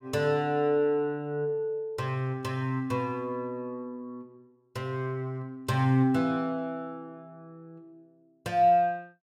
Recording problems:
none

